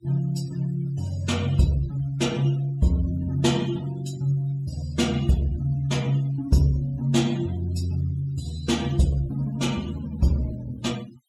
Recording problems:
noise reduction artefacts; signal-to-artefact ratio 20 dB

